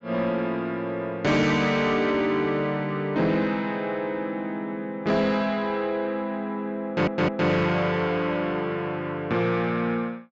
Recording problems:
low-pass filter; nothing above 8 kHz
distortion; soft clipping, signal-to-distortion ratio 10 dB
stutter; at 7 s

